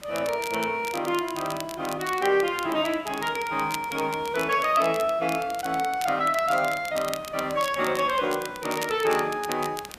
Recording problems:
background hiss; slope -5 dB per octave, SNR 23 dB
crackling; vinyl, SNR 14 dB

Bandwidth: 14.5 kHz